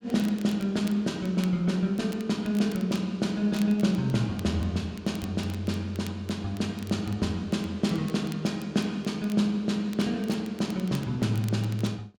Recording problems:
crackle; vinyl, SNR 22 dB

